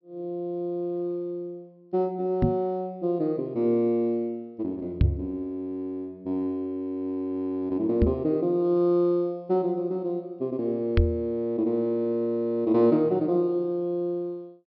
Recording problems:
treble missing; nothing above 5.5 kHz
microphone thump; 4 times, first at 2.5 s; peak +9 dB vs average level

